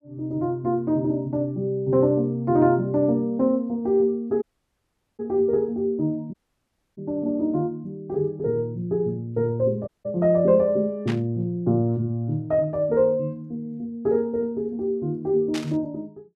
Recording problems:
audio cutting out; at 4.5 s for 1 s, at 6.5 s for 0.5 s and at 10 s
static burst; at 11 s and at 16 s; peak -6 dB vs average level

